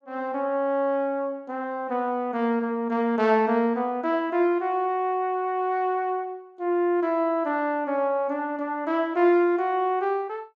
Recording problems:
none

